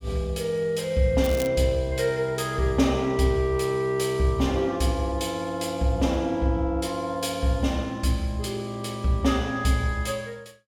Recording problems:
crackling; at 1 s; loose cable, SNR 15 dB

